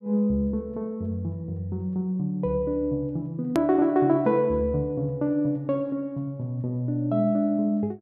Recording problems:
hard cut with a click; at 3.5 s

